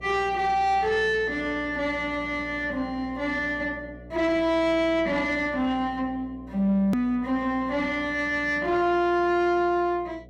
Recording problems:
distorted audio; soft clipping, signal-to-distortion ratio 12 dB
electrical hum; 60 Hz, harmonics up to 720 Hz, SNR 20 dB
click at an edit; at 7 s

